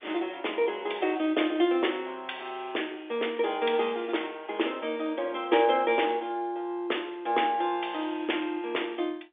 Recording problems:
phone line; 280 Hz to 3.6 kHz, G.711

